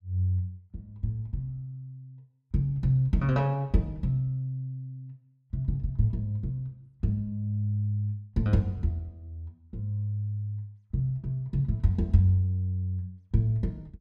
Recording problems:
none

